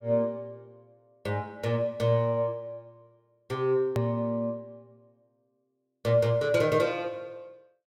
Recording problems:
click at an edit; at 4 s

